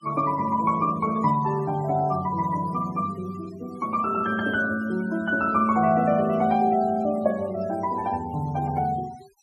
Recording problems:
noise reduction artefacts; signal-to-artefact ratio 21 dB

